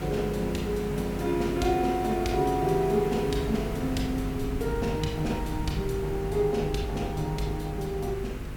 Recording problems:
electrical hum; 50 Hz, harmonics up to 500 Hz, SNR 10 dB
background hiss; SNR 13 dB
low-frequency rumble; below 150 Hz, SNR 12 dB

